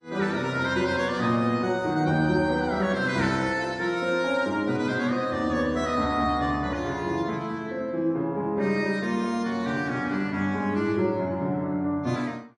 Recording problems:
codec artefacts; AAC, then MP3, log-spectral distance 2 dB, nothing above 10.1 kHz

